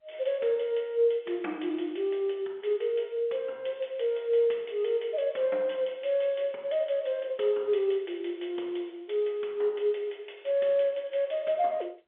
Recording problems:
telephone audio; 300 Hz to 3.5 kHz, G.711

